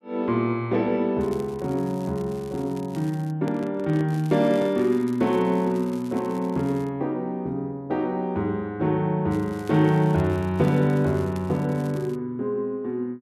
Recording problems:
crackling; from 1 to 3.5 s, from 4 to 7 s and from 9.5 to 12 s; loose cable, SNR 26 dB
handling noise; from 3.5 to 5 s; peak -6 dB vs average level

